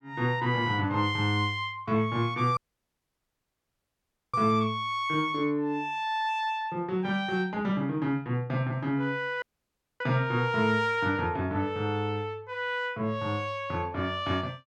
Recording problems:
audio cutting out; at 2.5 s for 2 s and at 9.5 s for 0.5 s

